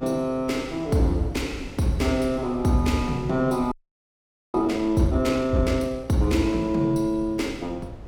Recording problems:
electrical hum; 50 Hz, harmonics up to 550 Hz, SNR 26 dB
wind noise; below 180 Hz, SNR 19 dB
audio freezing; at 3.5 s for 1 s

